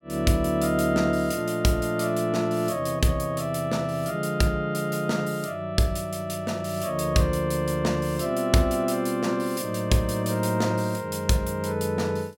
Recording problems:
none

